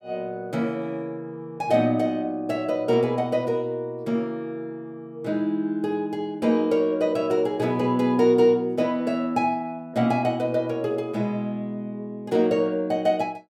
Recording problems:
none

